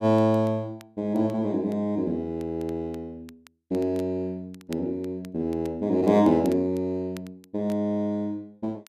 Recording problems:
crackling; vinyl, SNR 27 dB

